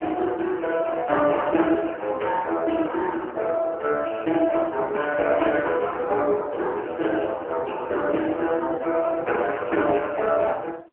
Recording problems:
telephone audio; 260 Hz to 3.1 kHz, AMR-NB

